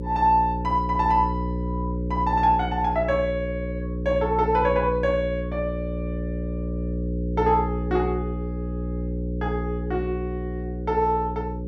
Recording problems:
electrical hum; 60 Hz, harmonics up to 540 Hz, SNR 5 dB

